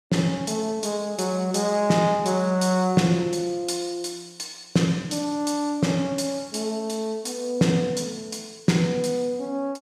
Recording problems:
none

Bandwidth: 14.5 kHz